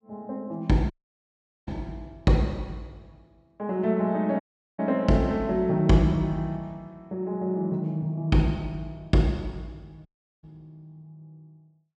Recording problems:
audio cutting out; at 1 s for 1 s, at 4.5 s and at 10 s

